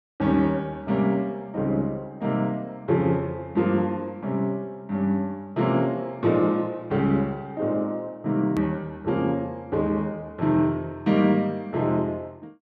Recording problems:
edit click; at 8.5 s

